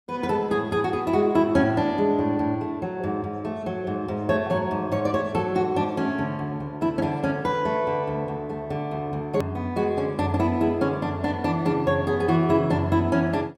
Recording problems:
edit click; at 9.5 s

